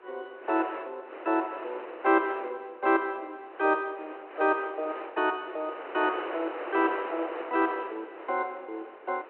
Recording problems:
telephone audio; 280 Hz to 3.1 kHz, G.726
wind noise; below 1.4 kHz, SNR 11 dB

